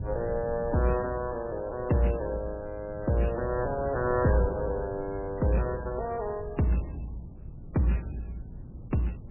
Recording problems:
lossy compression; MP3, log-spectral distance 2 dB, nothing above 2.7 kHz
wind on the microphone; below 150 Hz, SNR 13 dB

